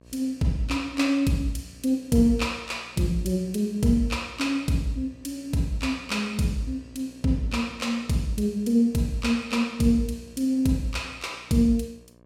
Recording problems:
hum; 60 Hz, harmonics up to 1.7 kHz, SNR 27 dB

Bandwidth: 16 kHz